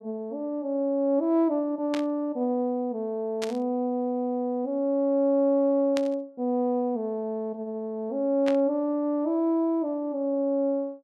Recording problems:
burst of static; 4 times, first at 2 s; peak -4 dB vs average level

